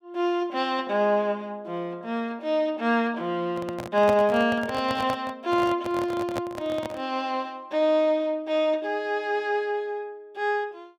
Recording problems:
handling noise; from 3.5 to 7 s; peak 0 dB vs average level

